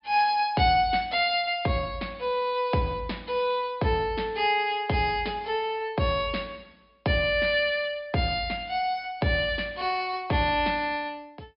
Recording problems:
treble missing; nothing above 5.5 kHz

